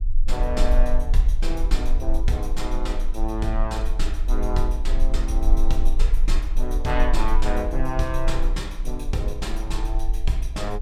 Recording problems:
rumble; below 38 Hz, strongest tone 18 Hz, SNR -3 dB

